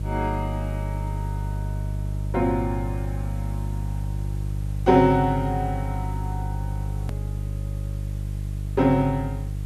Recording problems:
electrical hum; 50 Hz, harmonics up to 350 Hz, SNR 5 dB
hiss; SNR 27 dB
click at an edit; at 7 s

